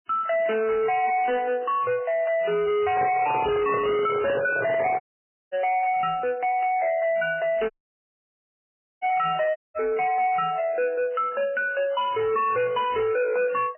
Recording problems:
codec artefacts; MP3, log-spectral distance 4 dB, nothing above 2.5 kHz
distortion; soft clipping, signal-to-distortion ratio 6 dB
microphone handling noise; from 3 to 5 s; peak +6 dB vs average level
dropout; at 5 s for 0.5 s, at 7.5 s for 1.5 s and at 9.5 s

